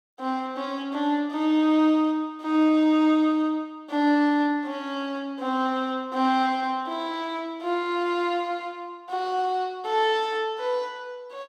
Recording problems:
none

